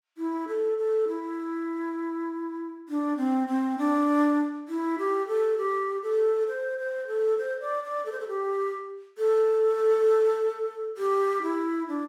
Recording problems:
none

